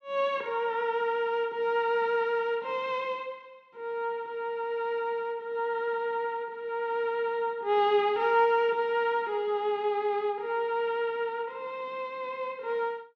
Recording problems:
none

